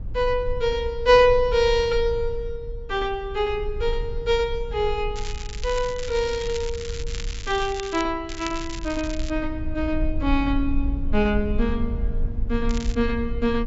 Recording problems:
treble cut off; nothing above 8 kHz
low-frequency rumble; below 58 Hz, strongest tone 22 Hz, SNR 8 dB
crackle; from 5 to 8 s, from 8.5 to 9.5 s and at 13 s; loose cable, SNR 14 dB

